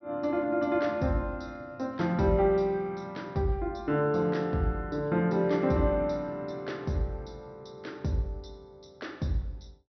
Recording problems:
treble cut off; nothing above 6 kHz

